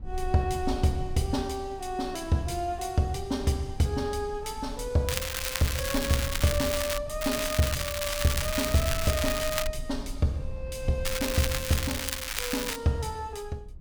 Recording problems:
low-frequency rumble; below 56 Hz, strongest tone 22 Hz, SNR 12 dB
crackling; from 5 to 7 s, from 7 to 9.5 s and from 11 to 13 s; loose cable, SNR 2 dB

